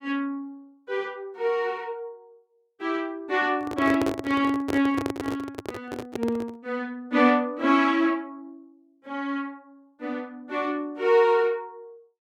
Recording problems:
handling noise; from 3.5 to 6.5 s; peak +2 dB vs average level

